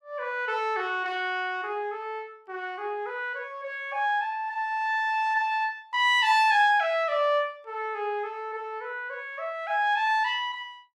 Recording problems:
none

